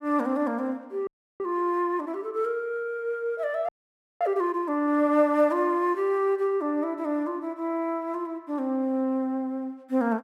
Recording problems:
frozen audio; at 1 s and at 3.5 s for 0.5 s

